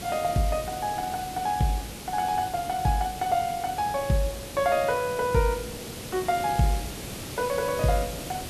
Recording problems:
background hiss; SNR 10 dB

